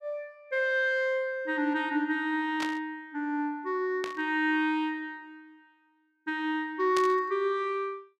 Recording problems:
burst of static; at 2.5 s, at 4 s and at 7 s; peak -2 dB vs average level

